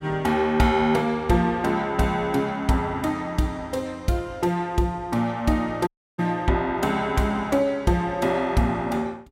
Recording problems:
dropout; at 6 s

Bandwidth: 16 kHz